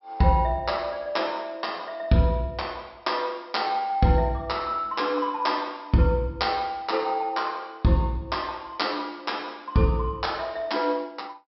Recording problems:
treble cut off; nothing above 5.5 kHz

